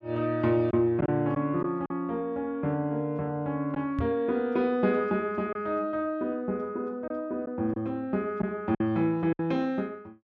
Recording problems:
packet loss; 3% of the sound replaced, filled with silence
microphone bump; at 4 s; peak 0 dB vs average level

